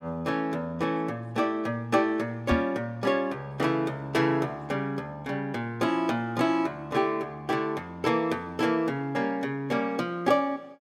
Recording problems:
microphone bump; at 2.5 s; peak +5 dB vs average level

